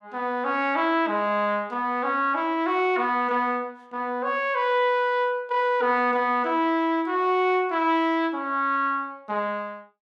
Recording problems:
none

